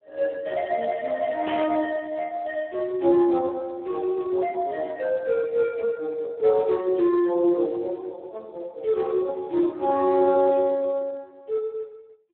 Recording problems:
telephone audio; 240 Hz to 3 kHz, Speex
burst of static; at 1.5 s; peak -5 dB vs average level

